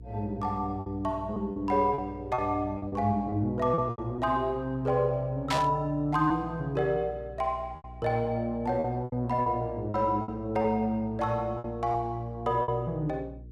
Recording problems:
hum; 60 Hz, harmonics up to 480 Hz, SNR 17 dB
packet loss; 8% of the sound replaced, filled with repeated pitch periods
static burst; at 5.5 s; peak +2 dB vs average level

